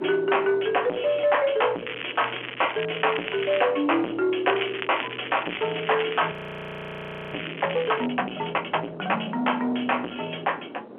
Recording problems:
phone line; 220 Hz to 3.3 kHz, G.711
distorted audio; soft clipping, signal-to-distortion ratio 4 dB
wind on the microphone; below 590 Hz, SNR 17 dB
crackle; from 2 to 3.5 s and from 4.5 to 8 s; loose cable, SNR 9 dB
audio freezing; at 6.5 s for 1 s

